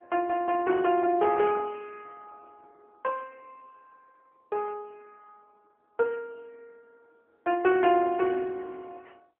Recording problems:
telephone audio; 280 Hz to 3.3 kHz, AMR-NB

